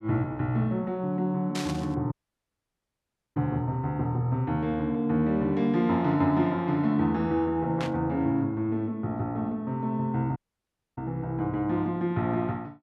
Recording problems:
static burst; at 1.5 s and at 8 s; peak -4 dB vs average level
dropout; at 2 s for 1 s and at 10 s for 0.5 s

